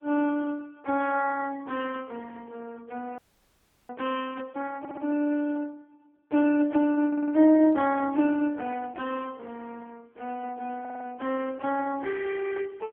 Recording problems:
telephone audio; 190 Hz to 3.1 kHz, AMR-NB
audio freezing; at 3 s for 0.5 s
audio stuttering; at 5 s, at 7 s and at 11 s

